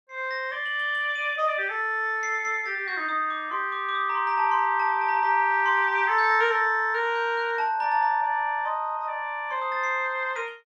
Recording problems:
none

